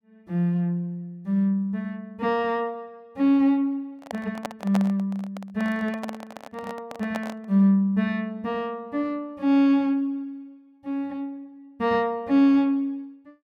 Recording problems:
handling noise; from 4 to 7.5 s; peak -2 dB vs average level

